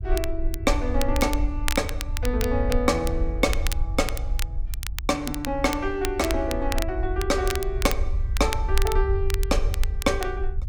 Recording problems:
low-frequency rumble; below 62 Hz, SNR 3 dB
crackling; vinyl, SNR 9 dB

